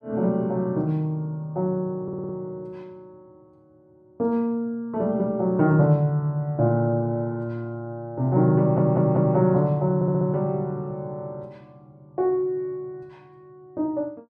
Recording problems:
stutter; at 2 s, at 8.5 s and at 10 s

